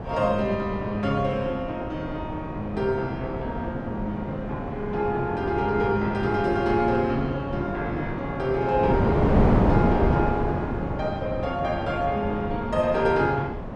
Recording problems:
wind on the microphone; below 510 Hz, SNR 3 dB

